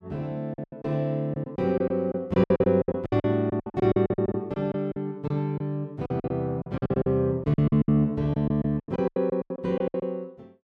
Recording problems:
packet loss; 18% of the sound replaced, filled with silence

